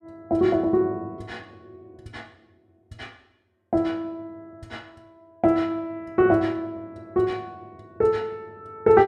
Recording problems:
none

